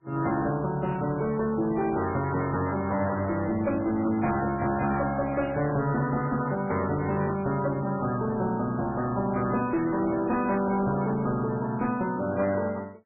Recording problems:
codec artefacts; MP3, log-spectral distance 3 dB, nothing above 2.5 kHz
distortion; hard clipping, uneven, signal-to-distortion ratio 11 dB

